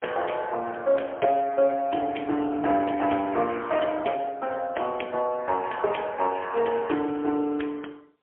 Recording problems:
phone line; 320 Hz to 3.2 kHz, AMR-NB, then MP3

